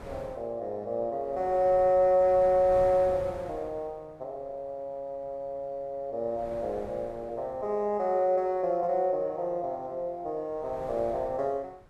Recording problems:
wind on the microphone; below 870 Hz, SNR 18 dB

